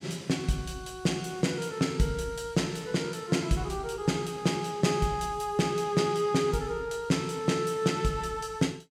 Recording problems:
none

